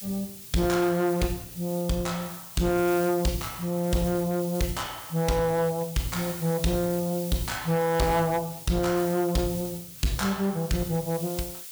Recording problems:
distortion; hard clipping, signal-to-distortion ratio 10 dB
hiss; SNR 11 dB

